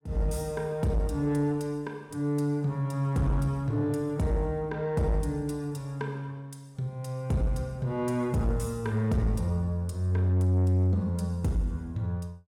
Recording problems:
distortion; soft clipping, signal-to-distortion ratio 11 dB

